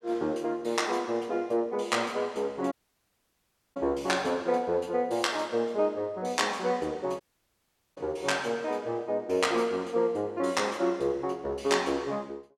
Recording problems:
audio cutting out; at 2.5 s for 1 s and at 7 s for 1 s

